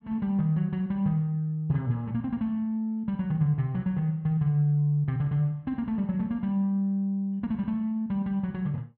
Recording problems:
none

